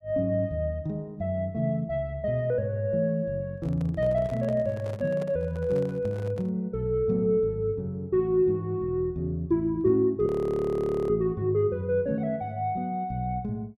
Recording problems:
handling noise; from 3.5 to 6.5 s; peak -10 dB vs average level
audio freezing; at 10 s for 1 s

